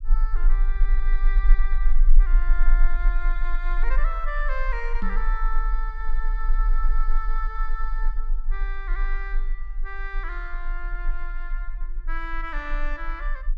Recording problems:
rumble; below 34 Hz, strongest tone 24 Hz, SNR -8 dB
microphone bump; at 5 s; peak +6 dB vs average level

